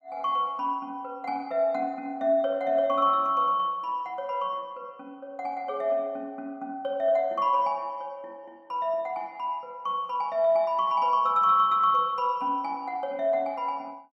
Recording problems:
none

